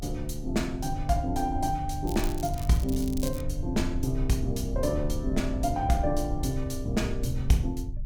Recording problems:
rumble; below 70 Hz, SNR 6 dB
crackling; from 2 to 3.5 s; loose cable, SNR 14 dB

